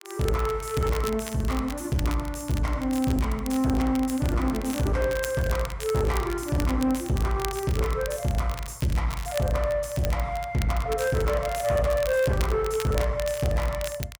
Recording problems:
distorted audio; soft clipping, signal-to-distortion ratio 10 dB
crackling; vinyl, SNR 14 dB

